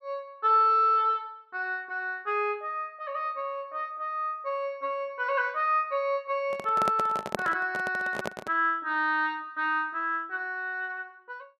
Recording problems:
microphone handling noise; from 6.5 to 8.5 s; peak +2 dB vs average level

